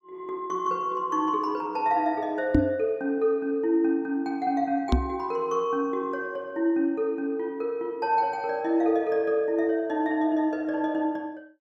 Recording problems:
microphone bump; at 2.5 s and at 5 s; peak +9 dB vs average level

